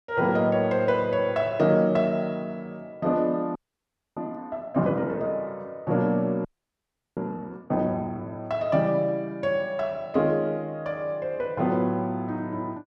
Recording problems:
frozen audio; at 3.5 s for 0.5 s and at 6.5 s for 0.5 s

